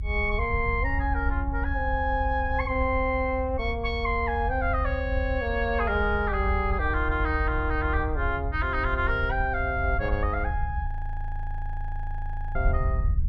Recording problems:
low-frequency rumble; below 76 Hz, SNR 3 dB
frozen audio; at 11 s for 1.5 s

